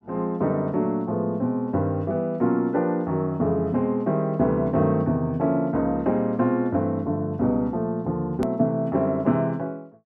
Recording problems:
hard cut with a click; at 8.5 s

